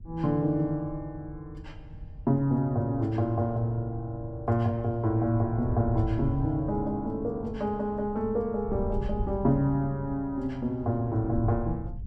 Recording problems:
wind on the microphone; below 110 Hz, SNR 12 dB

